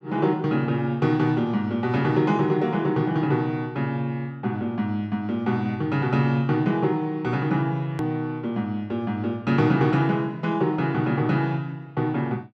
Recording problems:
hard cut with a click; at 8 s

